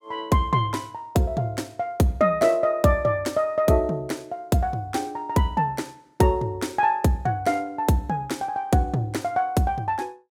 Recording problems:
none

